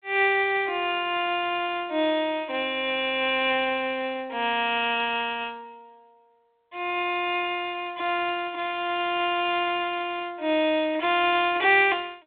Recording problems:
telephone audio; 280 Hz to 3.5 kHz, G.726

